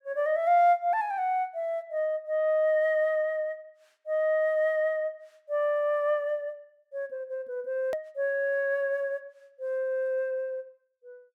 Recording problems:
click at an edit; at 8 s

